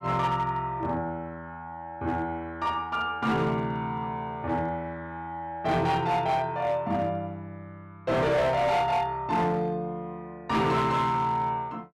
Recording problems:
distortion; hard clipping, signal-to-distortion ratio 11 dB

